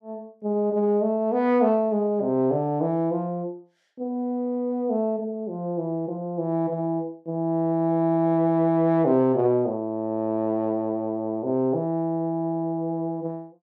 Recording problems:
none

